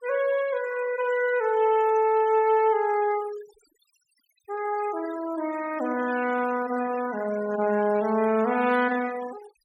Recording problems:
denoising artefacts; signal-to-artefact ratio 15 dB

